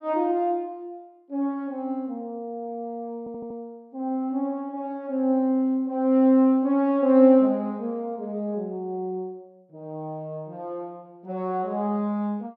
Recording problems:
audio stuttering; at 3 s

